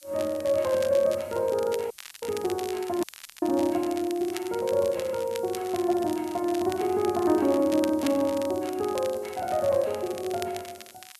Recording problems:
background hiss; slope +5 dB per octave, SNR 25 dB
crackling; vinyl, SNR 16 dB
audio cutting out; at 2 s and at 3 s

